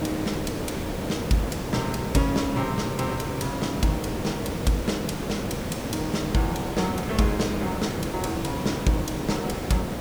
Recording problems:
hiss; slope -7 dB per octave, SNR 2 dB

